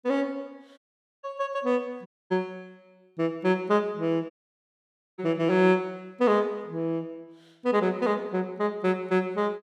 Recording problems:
audio cutting out; at 1 s, at 2 s and at 4.5 s for 1 s

